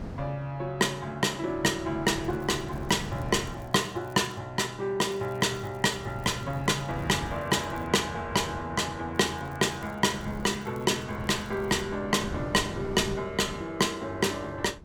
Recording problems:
wind noise; below 320 Hz, SNR 14 dB
crackle; from 2 to 4.5 s, from 5 to 8 s and from 9 to 12 s; loose cable, SNR 30 dB

